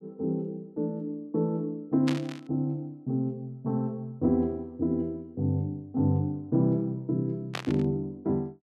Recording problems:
burst of static; at 2 s and at 7.5 s; peak 0 dB vs average level

